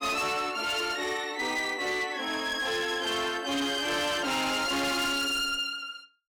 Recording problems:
distortion; hard clipping, signal-to-distortion ratio 8 dB

